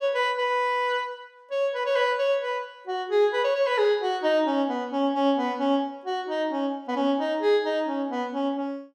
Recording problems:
none

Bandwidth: 16 kHz